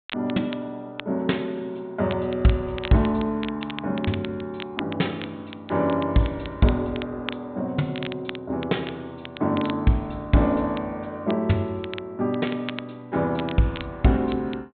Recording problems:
treble cut off; nothing above 4 kHz
crackling; vinyl, SNR 14 dB

